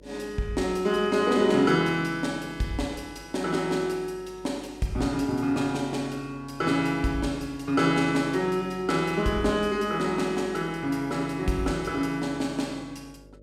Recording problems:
hum; 50 Hz, harmonics up to 600 Hz, SNR 25 dB

